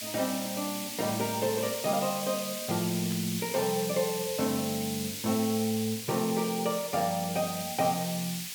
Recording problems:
background hiss; SNR 5 dB
static burst; at 3 s; peak -11 dB vs average level

